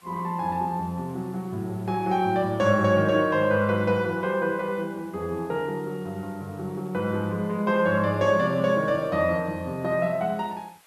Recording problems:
background hiss; SNR 30 dB

